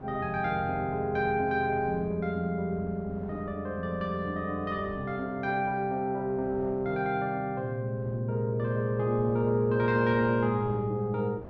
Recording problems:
wind on the microphone; below 500 Hz, SNR 20 dB

